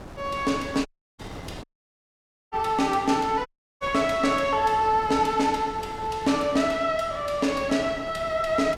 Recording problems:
wind on the microphone; below 790 Hz, SNR 17 dB
dropout; at 1 s, at 1.5 s for 1 s and at 3.5 s

